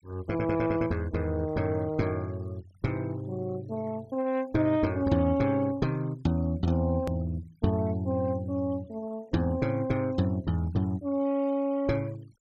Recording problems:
denoising artefacts; signal-to-artefact ratio 26 dB
hard cut with a click; at 7 s

